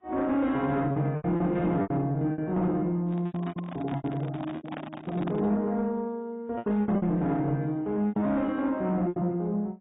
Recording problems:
codec artefacts; AAC, log-spectral distance 2 dB, nothing above 3.8 kHz
distortion; soft clipping, signal-to-distortion ratio 12 dB
lost packets; 11% of the sound replaced, filled with repeated pitch periods
handling noise; from 3 to 5.5 s; peak -5 dB vs average level

